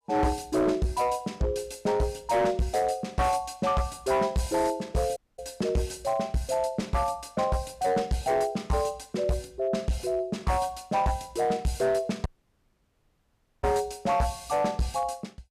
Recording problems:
distorted audio; hard clipping, uneven, signal-to-distortion ratio 11 dB
audio cutting out; at 5 s and at 12 s for 1.5 s

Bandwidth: 14.5 kHz